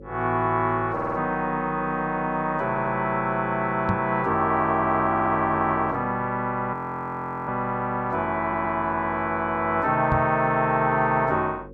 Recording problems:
hum; 50 Hz, harmonics up to 550 Hz, SNR 20 dB
stutter; 4 times, first at 1 s
microphone bump; at 4 s and at 10 s; peak +2 dB vs average level
frozen audio; at 6.5 s for 1 s

